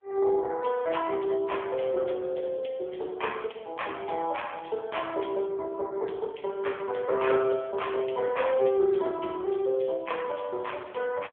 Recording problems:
telephone audio; 340 Hz to 3.4 kHz, AMR-NB

